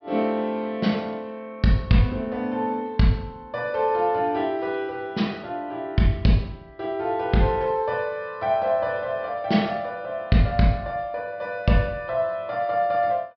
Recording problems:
treble missing; nothing above 5.5 kHz

